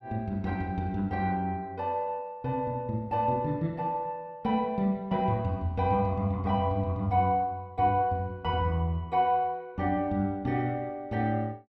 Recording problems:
none

